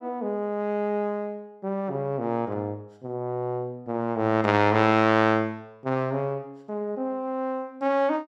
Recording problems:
none

